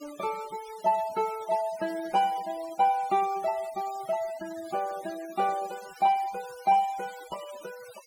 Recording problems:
noise reduction artefacts; signal-to-artefact ratio 19 dB

